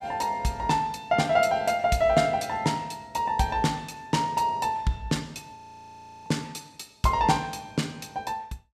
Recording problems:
frozen audio; at 5.5 s for 0.5 s

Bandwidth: 15 kHz